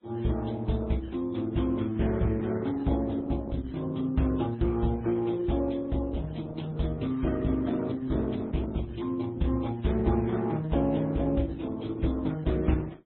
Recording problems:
lossy compression; Opus, then MP3, log-spectral distance 4 dB, nothing above 3.9 kHz

